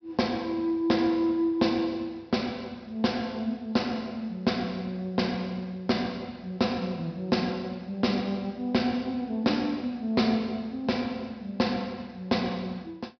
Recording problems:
treble missing; nothing above 5.5 kHz

